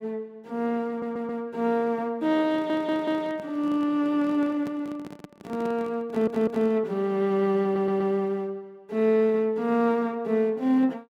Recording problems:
stutter; 4 times, first at 1 s
microphone handling noise; from 2.5 to 7 s; peak -9 dB vs average level

